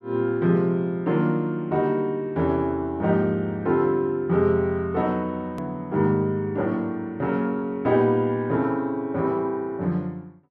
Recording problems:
hard cut with a click; at 5.5 s

